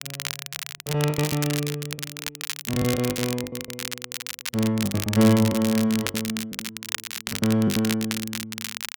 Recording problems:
crackling; vinyl, SNR 7 dB
lost packets; 16% of the sound replaced, filled with the last packet

